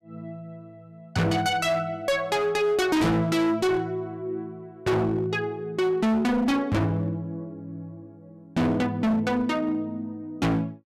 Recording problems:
distortion; hard clipping, signal-to-distortion ratio 6 dB

